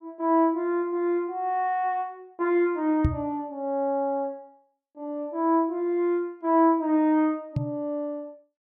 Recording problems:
knock on the microphone; at 3 s and at 7.5 s; peak +5 dB vs average level

